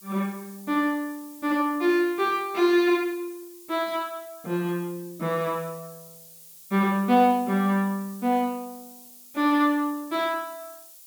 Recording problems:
background hiss; SNR 20 dB

